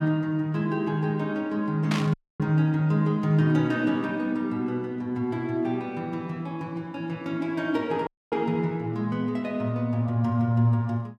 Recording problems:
burst of static; at 2 s; peak -1 dB vs average level
dropout; at 2 s and at 8 s

